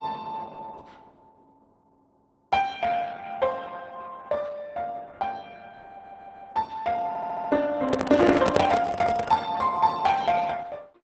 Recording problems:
lossy compression; Opus, log-spectral distance 4 dB, nothing above 8 kHz
audio stuttering; at 6 s and at 7 s
handling noise; from 8 to 9.5 s; peak +4 dB vs average level

